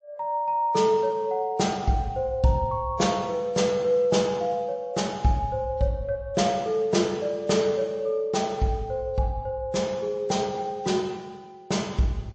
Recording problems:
codec artefacts; MP3, log-spectral distance 2 dB, nothing above 7.1 kHz

